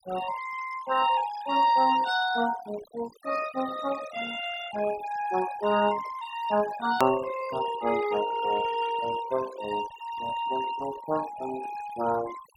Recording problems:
denoising artefacts; signal-to-artefact ratio 14 dB
click at an edit; at 7 s

